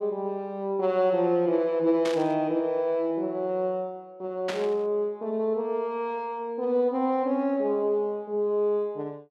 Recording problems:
static burst; at 2 s and at 4.5 s; peak -3 dB vs average level

